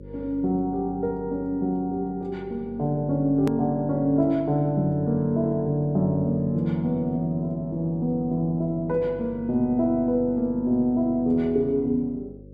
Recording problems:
electrical hum; 50 Hz, harmonics up to 550 Hz, SNR 18 dB
edit click; at 3.5 s

